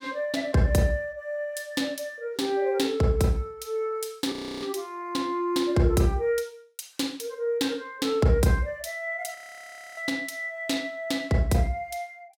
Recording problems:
audio freezing; at 4.5 s and at 9.5 s for 0.5 s

